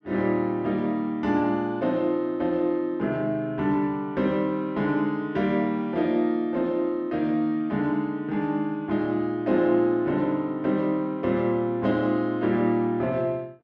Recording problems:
none

